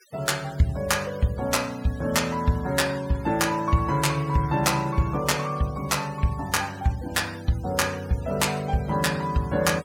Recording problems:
noise reduction artefacts; signal-to-artefact ratio 20 dB

